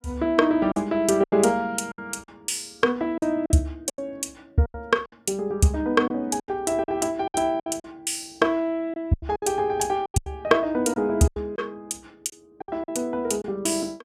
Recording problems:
lost packets; 11% of the sound replaced, filled with silence

